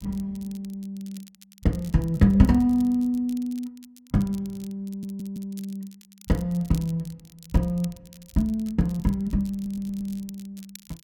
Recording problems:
crackling; vinyl, SNR 24 dB
stutter; at 5 s and at 9.5 s

